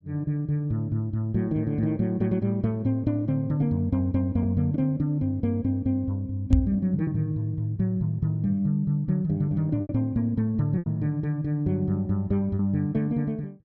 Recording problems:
lost packets; 2% of the sound replaced, filled with repeated pitch periods
microphone bump; at 6.5 s; peak +9 dB vs average level

